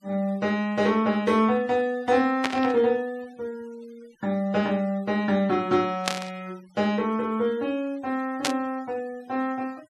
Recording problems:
denoising artefacts; signal-to-artefact ratio 26 dB
static burst; at 2.5 s, at 6 s and at 8.5 s; peak +4 dB vs average level

